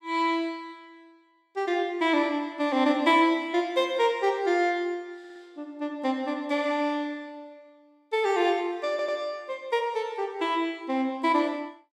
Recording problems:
stutter; at 5 s and at 9 s

